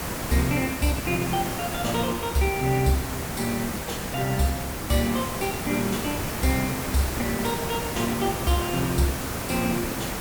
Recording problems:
background hiss; slope -5 dB per octave, SNR 3 dB

